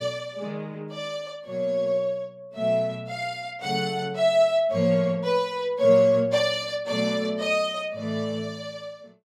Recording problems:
none

